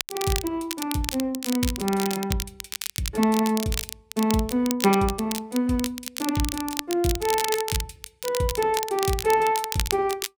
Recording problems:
crackling; vinyl, SNR 6 dB

